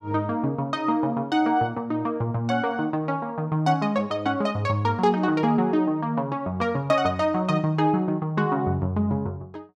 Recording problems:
none

